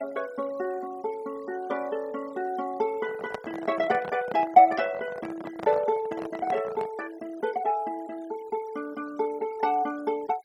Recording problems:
noise reduction artefacts; signal-to-artefact ratio 21 dB
microphone handling noise; from 3 to 7 s; peak -3 dB vs average level

